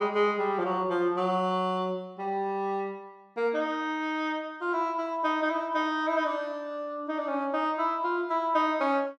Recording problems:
none

